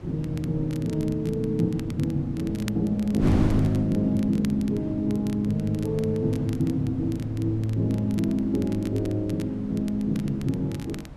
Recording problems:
wind on the microphone; below 250 Hz, SNR 12 dB
crackling; vinyl, SNR 22 dB

